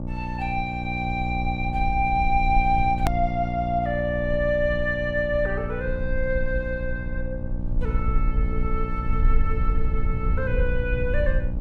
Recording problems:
hum; 60 Hz, harmonics up to 900 Hz, SNR 5 dB
low-frequency rumble; below 54 Hz, SNR 3 dB
edit click; at 3 s

